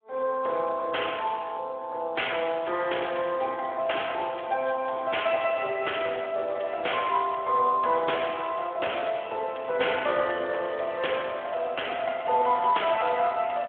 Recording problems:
telephone audio; 320 Hz to 3.4 kHz, Speex

